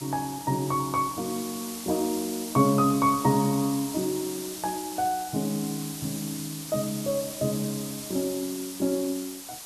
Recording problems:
background hiss; SNR 9 dB

